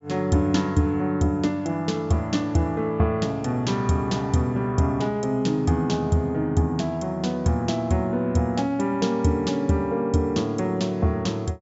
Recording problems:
low-pass filter; nothing above 8 kHz

